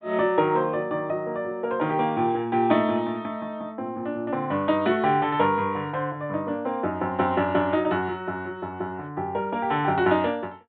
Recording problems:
treble cut off; nothing above 4 kHz

